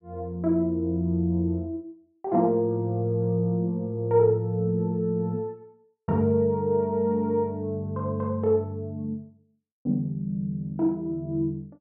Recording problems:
none

